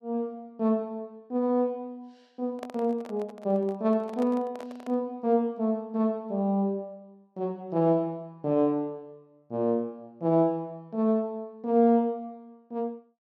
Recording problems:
handling noise; from 2.5 to 5 s; peak -8 dB vs average level

